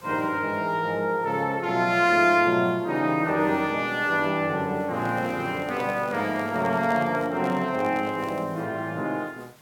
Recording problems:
background hiss; slope -3 dB per octave, SNR 27 dB
handling noise; from 5 to 8.5 s; peak -7 dB vs average level

